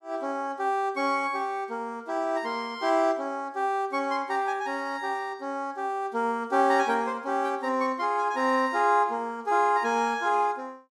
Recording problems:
none

